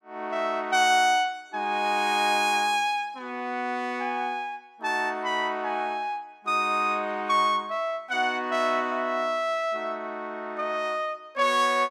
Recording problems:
none

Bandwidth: 15 kHz